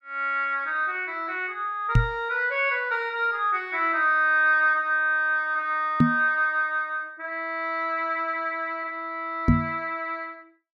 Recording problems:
knock on the microphone; at 2 s, at 6 s and at 9.5 s; peak +9 dB vs average level

